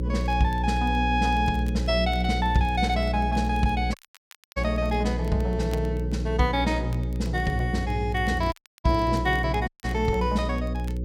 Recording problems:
hum; 60 Hz, harmonics up to 540 Hz, SNR 3 dB
crackling; vinyl, SNR 27 dB
dropout; at 4 s for 0.5 s, at 8.5 s and at 9.5 s

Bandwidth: 16.5 kHz